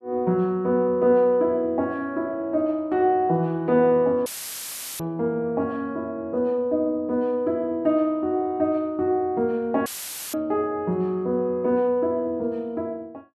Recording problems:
dropout; at 4.5 s for 0.5 s and at 10 s; filled with static

